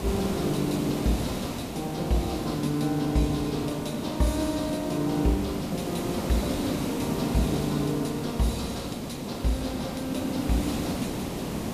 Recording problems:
background hiss; SNR 3 dB

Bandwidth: 14.5 kHz